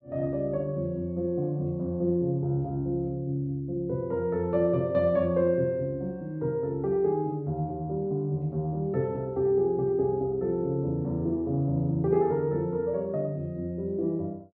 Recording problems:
none

